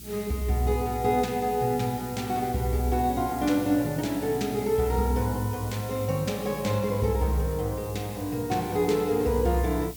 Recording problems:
electrical hum; 60 Hz, harmonics up to 360 Hz, SNR 19 dB
hiss; slope +4 dB per octave, SNR 15 dB

